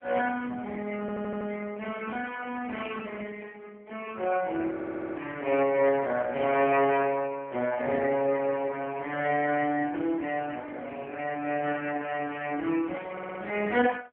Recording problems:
phone line; 260 Hz to 3.1 kHz, AMR-NB
audio stuttering; at 1 s, at 4.5 s and at 13 s

